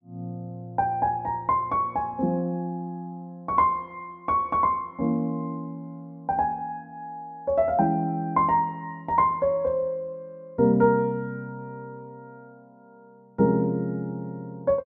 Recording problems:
none

